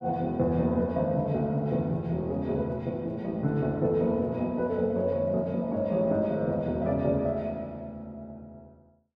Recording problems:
none

